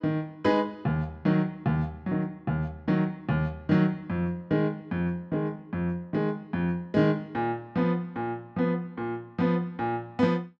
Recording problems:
none

